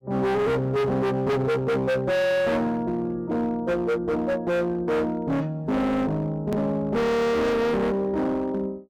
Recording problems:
distortion; hard clipping, signal-to-distortion ratio 7 dB
click at an edit; at 6.5 s

